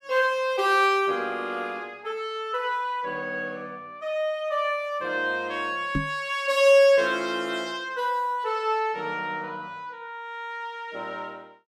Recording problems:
microphone bump; at 6 s; peak +2 dB vs average level

